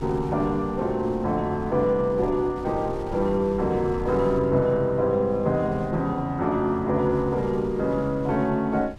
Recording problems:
wind noise; below 140 Hz, SNR 17 dB

